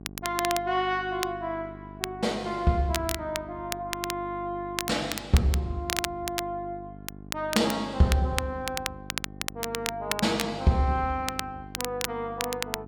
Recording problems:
mains hum; 50 Hz, harmonics up to 800 Hz, SNR 15 dB
crackle; vinyl, SNR 5 dB

